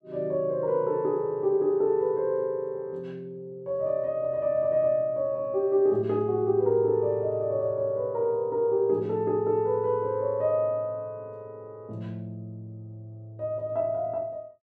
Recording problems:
none

